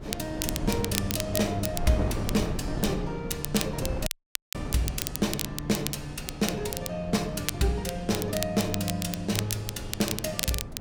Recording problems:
wind noise; below 310 Hz, SNR 7 dB
crackling; vinyl, SNR 5 dB
audio cutting out; at 4 s

